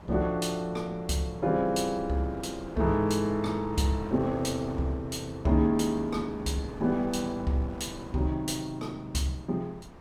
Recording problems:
wind noise; below 640 Hz, SNR 15 dB

